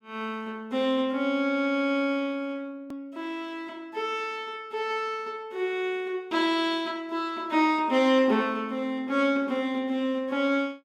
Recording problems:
hard cut with a click; at 3 s

